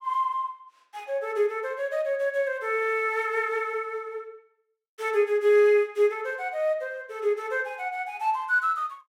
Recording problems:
none

